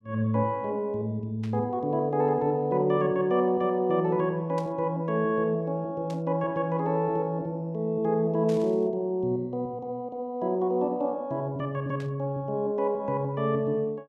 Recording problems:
static burst; 5 times, first at 1.5 s; peak -14 dB vs average level

